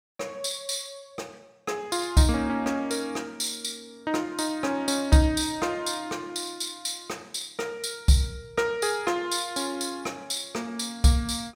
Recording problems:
none

